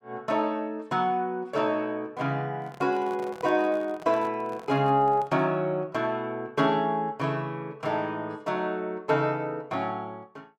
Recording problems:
handling noise; from 2.5 to 5.5 s; peak -10 dB vs average level

